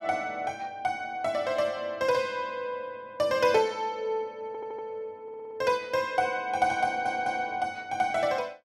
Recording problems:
audio stuttering; at 4.5 s, at 5 s and at 7 s

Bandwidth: 13.5 kHz